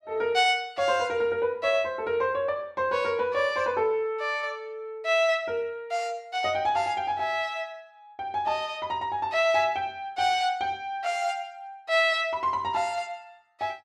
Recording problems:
none

